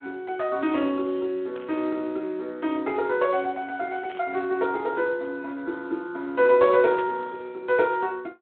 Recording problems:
telephone audio; 240 Hz to 3.3 kHz, Speex
burst of static; at 1.5 s, at 4 s and at 7 s; peak -10 dB vs average level

